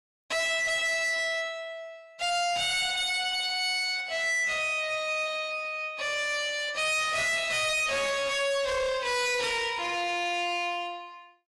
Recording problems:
lossy codec; AAC, log-spectral distance 3 dB, nothing above 11.3 kHz
distortion; hard clipping, signal-to-distortion ratio 7 dB

